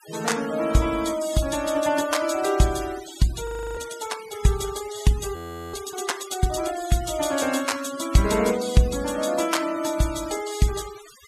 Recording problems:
noise reduction artefacts; signal-to-artefact ratio 14 dB
frozen audio; at 3.5 s and at 5.5 s

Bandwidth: 14 kHz